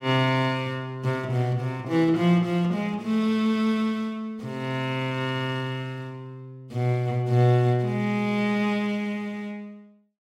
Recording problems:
none

